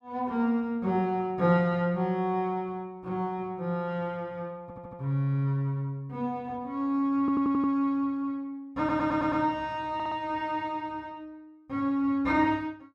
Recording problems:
audio stuttering; 4 times, first at 4.5 s

